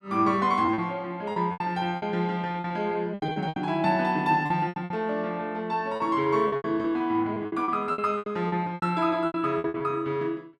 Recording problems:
lost packets; 15% of the sound replaced, filled with repeated pitch periods

